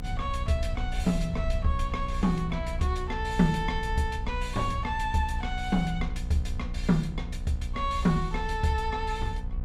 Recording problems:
electrical hum; 60 Hz, harmonics up to 1.3 kHz, SNR 12 dB
low-frequency rumble; below 64 Hz, strongest tone 34 Hz, SNR 6 dB

